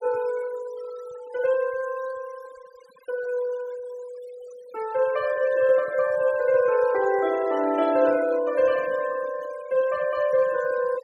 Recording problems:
denoising artefacts; signal-to-artefact ratio 18 dB

